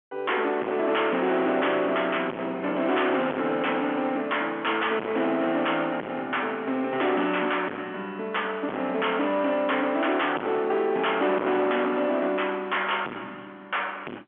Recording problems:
telephone audio; 190 Hz to 3.3 kHz, G.711
distorted audio; hard clipping, signal-to-distortion ratio 6 dB

